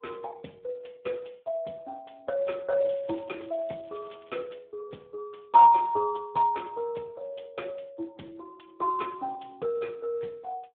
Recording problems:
telephone audio; 220 Hz to 3.8 kHz, Speex
crackle; from 3 to 4.5 s; loose cable, SNR 27 dB

